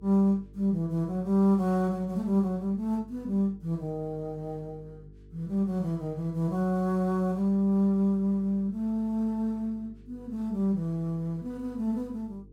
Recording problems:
electrical hum; 50 Hz, harmonics up to 450 Hz, SNR 23 dB

